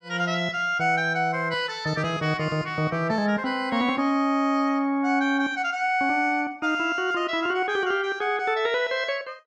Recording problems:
none

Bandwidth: 12.5 kHz